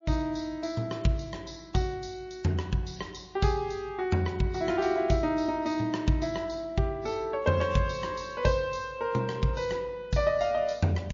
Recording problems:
codec artefacts; MP3, log-spectral distance 3 dB, nothing above 6.7 kHz

